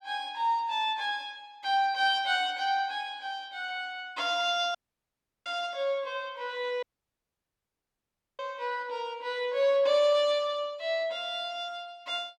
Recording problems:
audio cutting out; at 5 s for 0.5 s and at 7 s for 1.5 s

